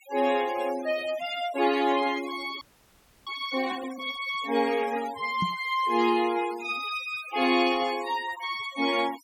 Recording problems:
denoising artefacts; signal-to-artefact ratio 16 dB
frozen audio; at 2.5 s for 0.5 s
knock on the microphone; at 5.5 s; peak 0 dB vs average level

